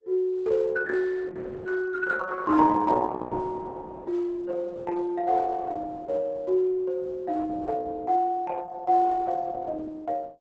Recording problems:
lossy compression; Opus, log-spectral distance 3 dB, nothing above 8 kHz

